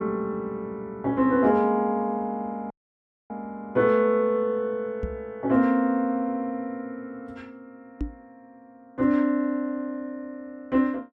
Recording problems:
audio cutting out; at 2.5 s for 0.5 s
microphone thump; at 5 s and at 8 s; peak -1 dB vs average level

